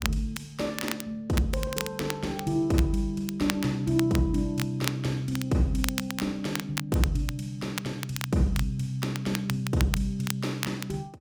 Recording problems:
crackle; vinyl, SNR 8 dB

